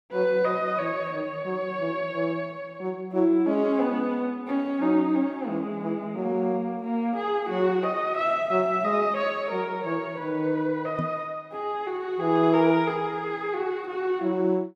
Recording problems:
knock on the microphone; at 11 s; peak -2 dB vs average level

